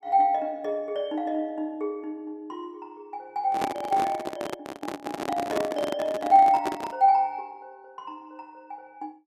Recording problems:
microphone handling noise; from 3.5 to 7 s; peak +1 dB vs average level

